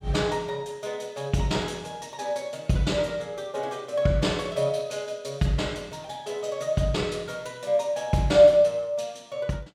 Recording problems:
none

